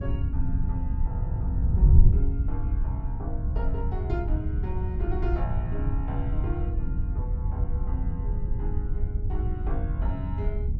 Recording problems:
treble missing; nothing above 8 kHz
wind noise; below 82 Hz, SNR -10 dB

